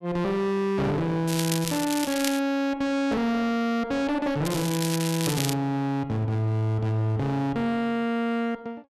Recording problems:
distorted audio; hard clipping, signal-to-distortion ratio 6 dB
crackle; from 1.5 to 2.5 s and from 4.5 to 5.5 s; loose cable, SNR 6 dB

